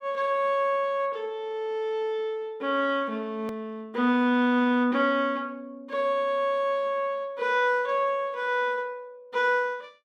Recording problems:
click at an edit; at 3.5 s

